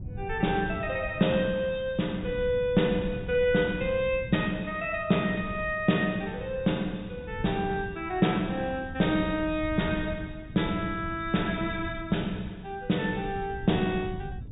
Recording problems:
treble cut off; nothing above 4 kHz
wind on the microphone; below 140 Hz, SNR 13 dB

